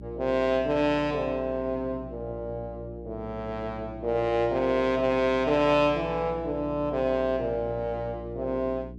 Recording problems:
mains hum; 60 Hz, harmonics up to 420 Hz, SNR 15 dB

